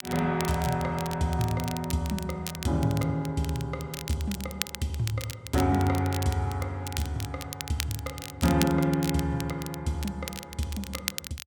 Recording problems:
crackle; vinyl, SNR 9 dB

